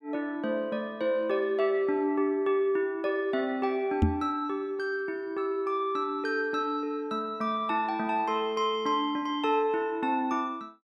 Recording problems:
microphone bump; at 4 s; peak +8 dB vs average level

